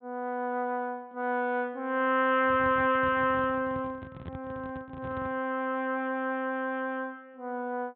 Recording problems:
treble missing; nothing above 4 kHz
handling noise; from 2.5 to 5.5 s; peak -7 dB vs average level

